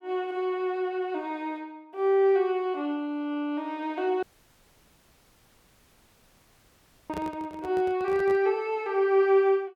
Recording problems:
audio cutting out; at 4 s for 3 s
handling noise; from 7 to 8.5 s; peak -7 dB vs average level

